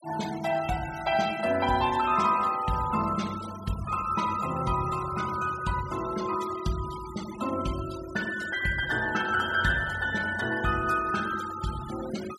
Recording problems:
noise reduction artefacts; signal-to-artefact ratio 15 dB

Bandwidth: 14.5 kHz